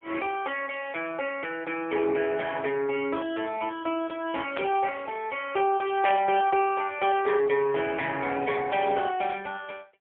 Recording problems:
telephone audio; 190 Hz to 3.3 kHz, AMR-NB, then MP3
burst of static; at 4.5 s and at 6 s; peak -3 dB vs average level

